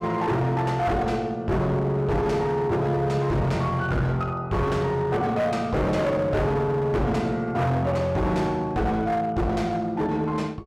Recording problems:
distortion; hard clipping, uneven, signal-to-distortion ratio 8 dB

